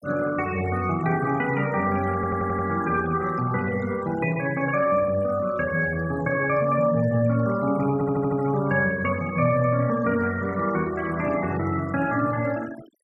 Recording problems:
denoising artefacts; signal-to-artefact ratio 17 dB
stutter; at 2 s and at 8 s

